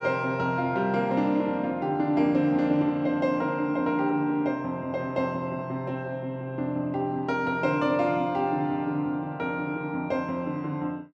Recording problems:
none

